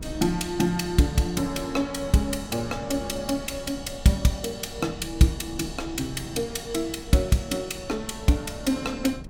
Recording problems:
wind noise; below 200 Hz, SNR 15 dB

